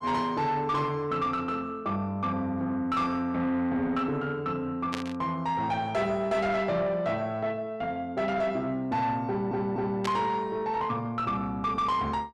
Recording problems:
distortion; soft clipping, signal-to-distortion ratio 11 dB
static burst; at 5 s and at 10 s; peak -1 dB vs average level
audio stuttering; at 9.5 s

